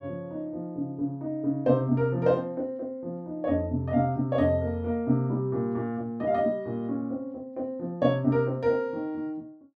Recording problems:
none

